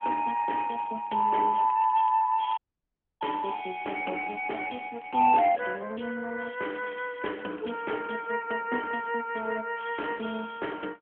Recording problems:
phone line; 240 Hz to 3.3 kHz, AMR-NB
crackle; from 0.5 to 6 s and from 6.5 to 8.5 s; loose cable, SNR 27 dB
audio cutting out; at 2.5 s for 0.5 s

